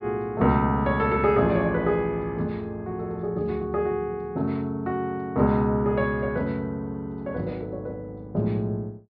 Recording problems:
low-pass filter; nothing above 5.5 kHz

